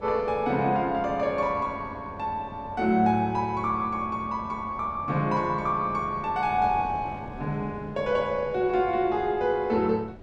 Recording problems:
wind on the microphone; below 470 Hz, SNR 18 dB

